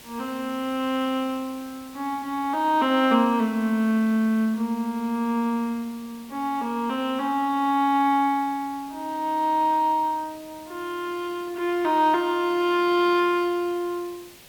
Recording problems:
background hiss; SNR 22 dB

